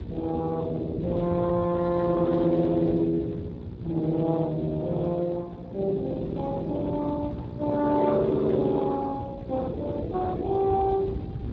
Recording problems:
lossy codec; Speex, log-spectral distance 3 dB
hum; 60 Hz, harmonics up to 1.4 kHz, SNR 12 dB
rumble; below 190 Hz, SNR 12 dB

